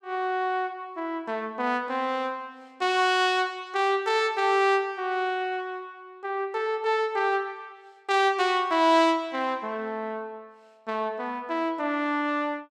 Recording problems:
none

